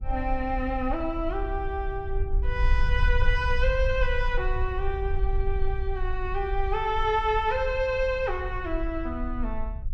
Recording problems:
rumble; below 54 Hz, SNR 3 dB

